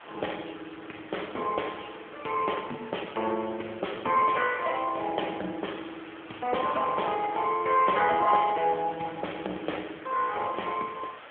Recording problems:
phone line; 280 Hz to 3.3 kHz, AMR-NB
hiss; SNR 17 dB

